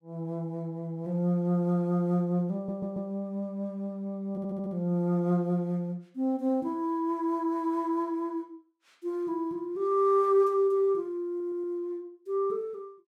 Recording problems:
audio stuttering; at 2.5 s, at 4.5 s and at 11 s

